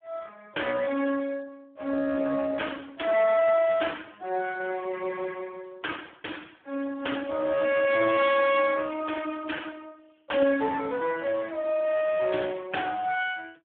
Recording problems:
telephone audio; 280 Hz to 3.4 kHz, Speex

